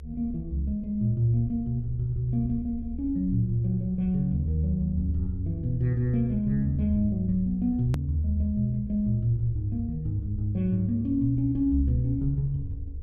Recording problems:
hum; 50 Hz, harmonics up to 500 Hz, SNR 33 dB
rumble; below 70 Hz, strongest tone 68 Hz, SNR 12 dB
hard cut with a click; at 8 s

